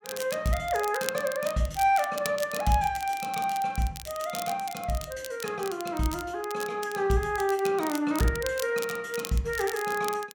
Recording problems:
crackle; vinyl, SNR 12 dB

